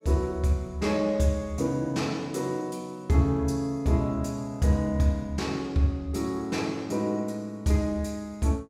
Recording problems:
none

